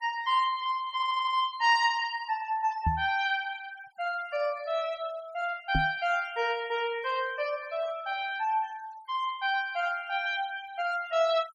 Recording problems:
noise reduction artefacts; signal-to-artefact ratio 20 dB
audio stuttering; at 1 s
knock on the microphone; at 3 s and at 6 s; peak +3 dB vs average level

